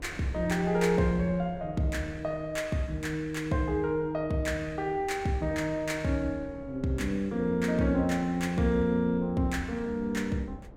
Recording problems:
wind noise; below 320 Hz, SNR 20 dB

